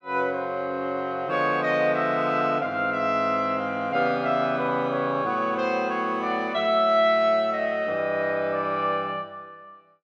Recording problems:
none

